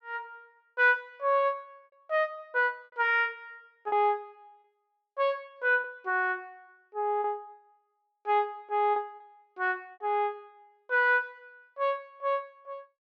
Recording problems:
lost packets; 3% of the sound replaced, filled with repeated pitch periods

